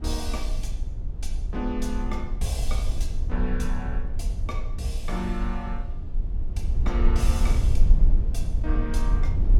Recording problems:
rumble; below 52 Hz, strongest tone 24 Hz, SNR -5 dB

